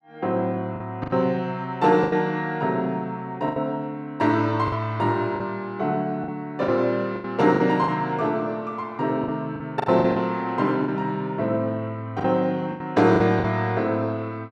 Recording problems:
packet loss; 8% of the sound replaced, filled with the last packet

